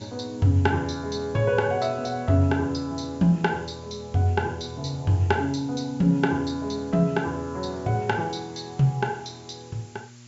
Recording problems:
low-pass filter; nothing above 7.5 kHz
hum; 60 Hz, harmonics up to 600 Hz, SNR 22 dB
background hiss; slope +3 dB per octave, SNR 27 dB

